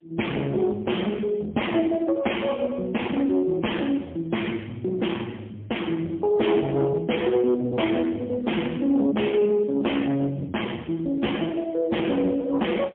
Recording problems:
phone line; 170 Hz to 3.3 kHz, AMR-NB, then MP3
distorted audio; soft clipping, signal-to-distortion ratio 11 dB

